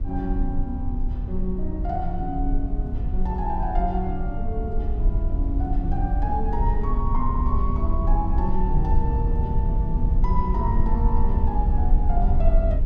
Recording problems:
rumble; below 62 Hz, SNR -4 dB

